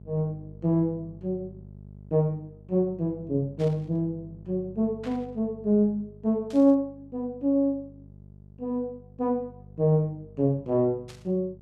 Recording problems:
electrical hum; 50 Hz, harmonics up to 600 Hz, SNR 20 dB
burst of static; 4 times, first at 3.5 s; peak -13 dB vs average level

